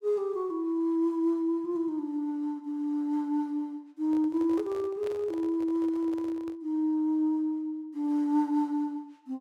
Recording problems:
microphone handling noise; from 4 to 6.5 s; peak -10 dB vs average level

